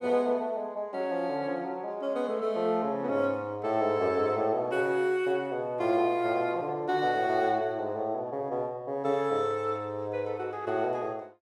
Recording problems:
none

